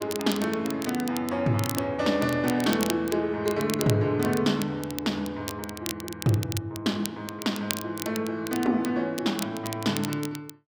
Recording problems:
crackling; vinyl, SNR 10 dB

